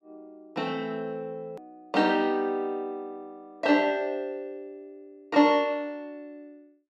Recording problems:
click at an edit; at 1.5 s

